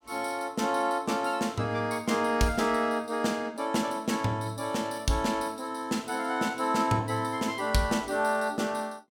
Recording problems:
none

